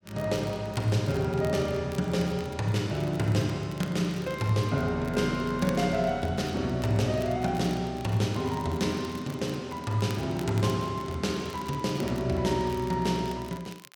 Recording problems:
crackling; vinyl, SNR 21 dB

